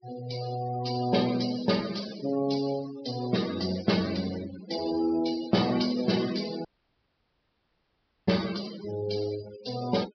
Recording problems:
treble cut off; nothing above 5.5 kHz
noise reduction artefacts; signal-to-artefact ratio 12 dB
dropout; at 6.5 s for 1.5 s

